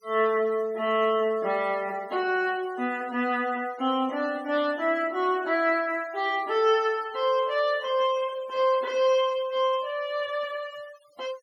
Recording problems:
noise reduction artefacts; signal-to-artefact ratio 24 dB

